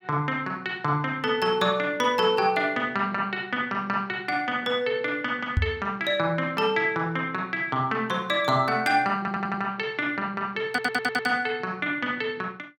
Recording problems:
microphone bump; at 5.5 s; peak +5 dB vs average level
stutter; at 9 s and at 11 s

